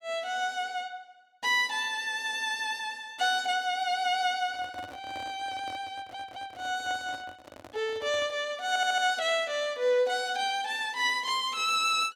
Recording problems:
handling noise; from 4.5 to 8.5 s; peak -11 dB vs average level
audio stuttering; at 6 s and at 8.5 s

